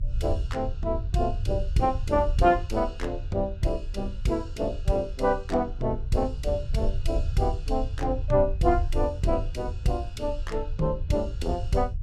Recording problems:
rumble; below 78 Hz, strongest tone 28 Hz, SNR 5 dB

